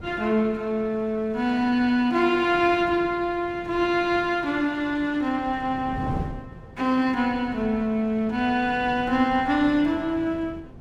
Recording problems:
wind on the microphone; below 280 Hz, SNR 17 dB

